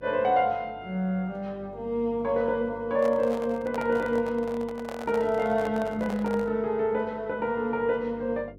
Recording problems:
mains hum; 50 Hz, harmonics up to 500 Hz, SNR 22 dB
microphone handling noise; from 3 to 6.5 s; peak -5 dB vs average level

